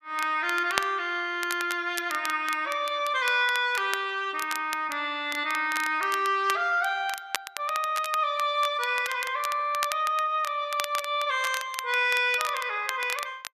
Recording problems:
crackle; vinyl, SNR 11 dB

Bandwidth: 14 kHz